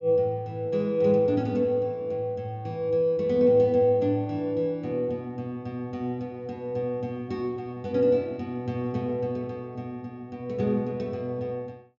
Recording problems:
low-pass filter; nothing above 7.2 kHz

